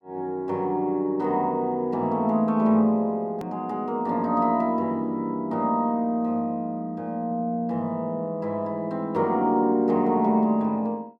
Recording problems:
hard cut with a click; at 3.5 s

